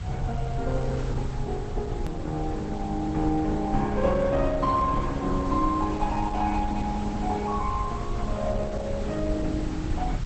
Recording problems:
lossy codec; Opus, log-spectral distance 4 dB
background hiss; SNR 17 dB
low-frequency rumble; below 82 Hz, SNR 7 dB
hard cut with a click; at 2 s

